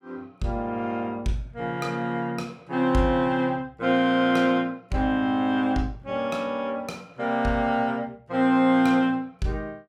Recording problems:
none

